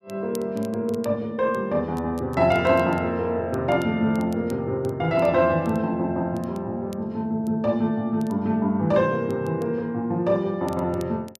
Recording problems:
crackling; vinyl, SNR 27 dB

